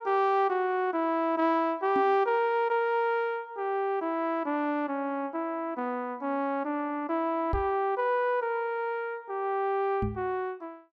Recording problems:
microphone thump; at 2 s, at 7.5 s and at 10 s; peak 0 dB vs average level

